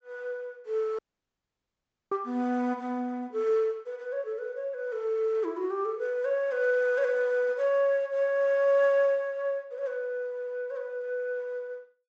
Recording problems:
treble missing; nothing above 8 kHz
audio cutting out; at 1 s for 1 s

